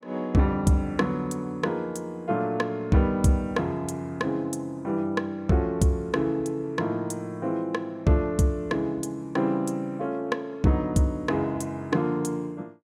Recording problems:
none

